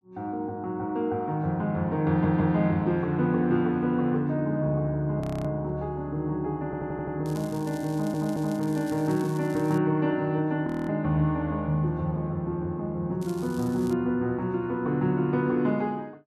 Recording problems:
stutter; at 2 s, at 6.5 s and at 8 s
audio freezing; at 5 s and at 11 s
crackle; from 7.5 to 10 s and at 13 s; loose cable, SNR 21 dB

